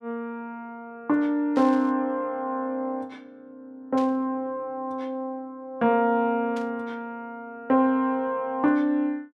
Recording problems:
burst of static; at 1.5 s, at 4 s and at 6.5 s; peak -13 dB vs average level

